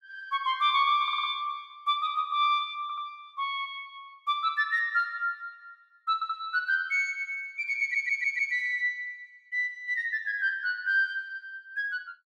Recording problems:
audio stuttering; 4 times, first at 1 s

